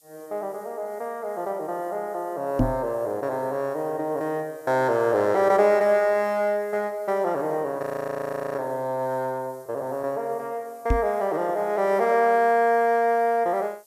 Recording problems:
hiss; SNR 29 dB
microphone thump; at 2.5 s and at 11 s; peak +5 dB vs average level
audio freezing; at 8 s for 0.5 s

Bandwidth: 14.5 kHz